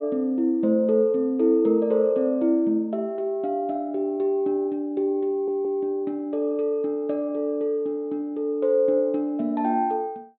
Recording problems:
treble missing; nothing above 4 kHz
audio stuttering; at 5.5 s

